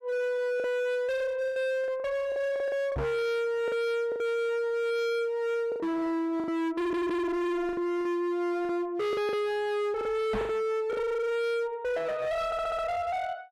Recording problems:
distorted audio; hard clipping, signal-to-distortion ratio 6 dB
packet loss; 8% of the sound replaced, filled with the last packet
knock on the microphone; at 3 s and at 10 s; peak +5 dB vs average level
stutter; at 7 s and at 12 s

